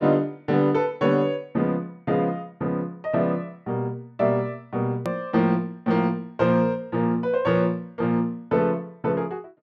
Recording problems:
hard cut with a click; at 5 s

